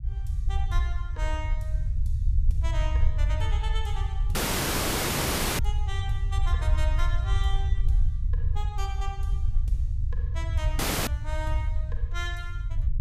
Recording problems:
rumble; below 72 Hz, SNR -10 dB
dropout; at 4.5 s for 1 s and at 11 s

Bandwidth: 14.5 kHz